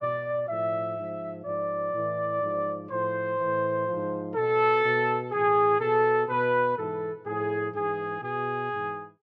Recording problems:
none

